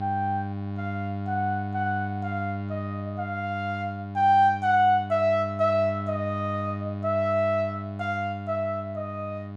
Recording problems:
hum; 50 Hz, harmonics up to 1.1 kHz, SNR 7 dB

